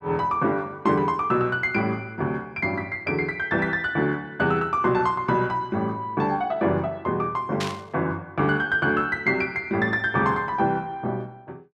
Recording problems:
burst of static; at 7.5 s; peak -2 dB vs average level

